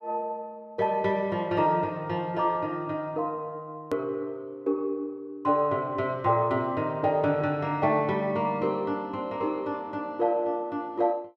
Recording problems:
click at an edit; at 4 s

